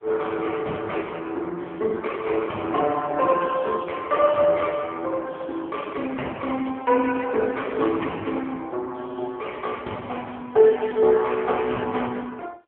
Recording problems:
telephone audio; 220 Hz to 3.3 kHz, AMR-NB

